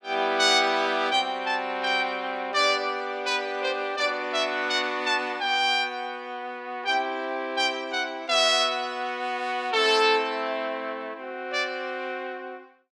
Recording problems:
none

